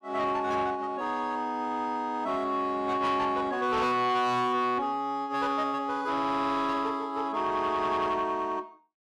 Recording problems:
distorted audio; soft clipping, signal-to-distortion ratio 11 dB

